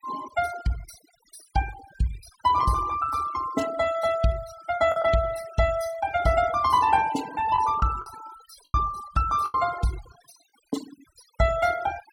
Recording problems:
noise reduction artefacts; signal-to-artefact ratio 15 dB
packet loss; 2% of the sound replaced, filled with the last packet

